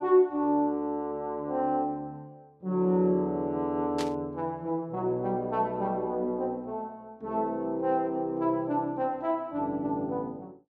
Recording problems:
burst of static; at 4 s; peak -4 dB vs average level

